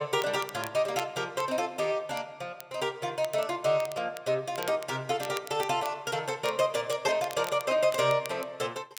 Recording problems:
crackle; vinyl, SNR 17 dB

